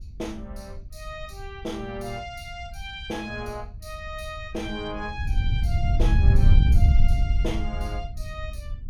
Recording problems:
wind noise; below 84 Hz, SNR -11 dB

